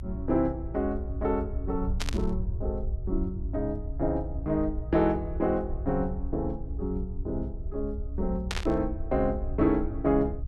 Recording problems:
low-frequency rumble; below 70 Hz, SNR 6 dB
burst of static; at 2 s and at 8.5 s; peak +2 dB vs average level

